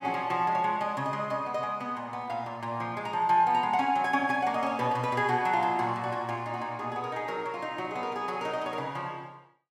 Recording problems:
none

